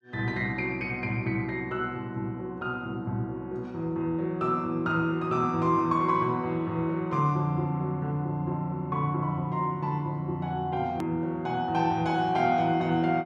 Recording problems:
edit click; at 11 s

